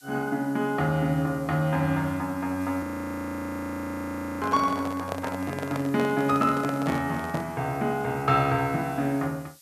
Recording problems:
background hiss; slope +6 dB per octave, SNR 23 dB
frozen audio; at 3 s for 1.5 s
microphone handling noise; from 4.5 to 7.5 s; peak -2 dB vs average level

